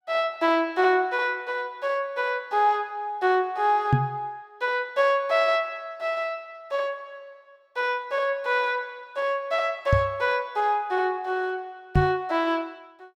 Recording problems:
microphone thump; at 4 s, at 10 s and at 12 s; peak +8 dB vs average level

